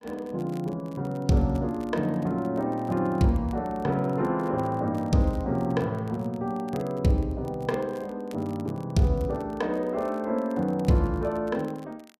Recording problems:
crackle; vinyl, SNR 29 dB

